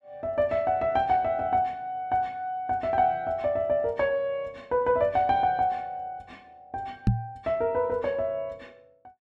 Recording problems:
knock on the microphone; at 7 s; peak +7 dB vs average level

